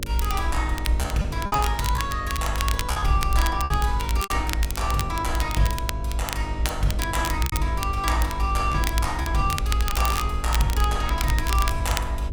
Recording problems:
hum; 50 Hz, harmonics up to 600 Hz, SNR 7 dB
low-frequency rumble; below 62 Hz, strongest tone 58 Hz, SNR 1 dB
crackling; vinyl, SNR 6 dB
packet loss; 5% of the sound replaced, filled with repeated pitch periods

